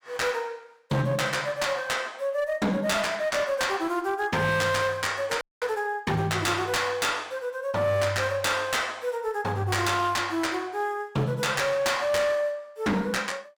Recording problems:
distortion; hard clipping, uneven, signal-to-distortion ratio 10 dB
audio freezing; at 5.5 s

